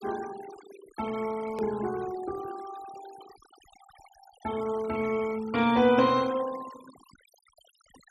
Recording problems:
denoising artefacts; signal-to-artefact ratio 19 dB
hard cut with a click; at 1.5 s

